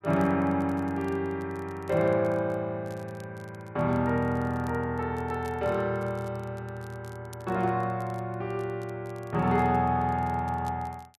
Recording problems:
crackle; vinyl, SNR 29 dB

